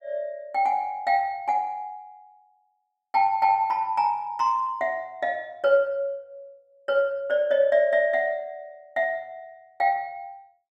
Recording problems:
none

